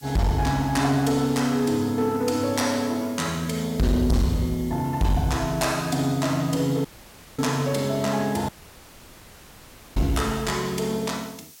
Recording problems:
distorted audio; hard clipping, uneven, signal-to-distortion ratio 8 dB
hiss; slope +3 dB per octave, SNR 21 dB
audio cutting out; at 7 s for 0.5 s and at 8.5 s for 1.5 s

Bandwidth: 16.5 kHz